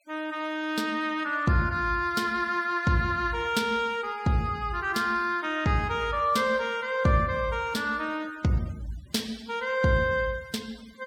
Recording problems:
denoising artefacts; signal-to-artefact ratio 24 dB

